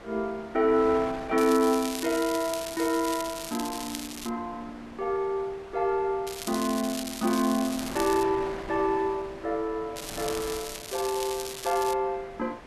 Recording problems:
wind on the microphone; below 1.6 kHz, SNR 16 dB
crackling; from 1.5 to 4.5 s, from 6.5 to 8 s and from 10 to 12 s; loose cable, SNR 9 dB

